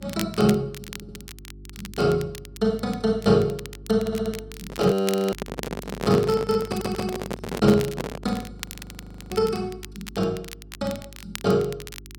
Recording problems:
electrical hum; 50 Hz, harmonics up to 400 Hz, SNR 20 dB
crackling; vinyl, SNR 16 dB
audio stuttering; at 1 s, at 4 s and at 6.5 s
handling noise; from 4.5 to 8.5 s; peak +2 dB vs average level
audio freezing; at 5 s and at 8.5 s for 1 s

